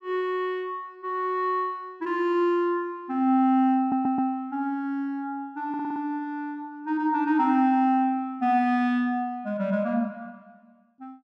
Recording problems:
audio stuttering; at 4 s and at 5.5 s

